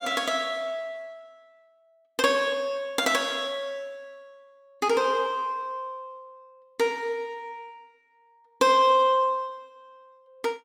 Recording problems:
none

